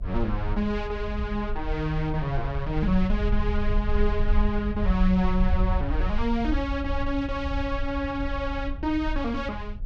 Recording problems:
hum; 60 Hz, harmonics up to 720 Hz, SNR 24 dB
rumble; below 62 Hz, SNR 3 dB

